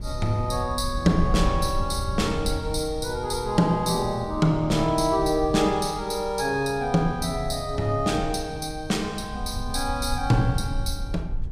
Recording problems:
low-frequency rumble; below 82 Hz, SNR 9 dB

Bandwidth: 15.5 kHz